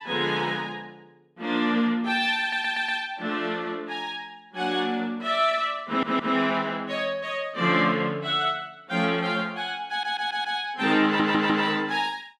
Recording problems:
stutter; 4 times, first at 2.5 s

